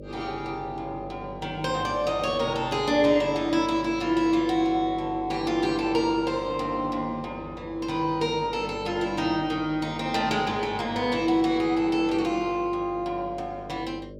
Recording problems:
electrical hum; 50 Hz, harmonics up to 600 Hz, SNR 15 dB

